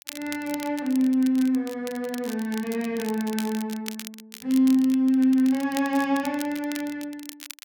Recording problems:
crackle; vinyl, SNR 16 dB

